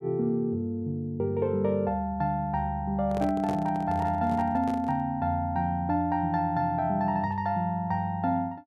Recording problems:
handling noise; from 3 to 5 s; peak -4 dB vs average level

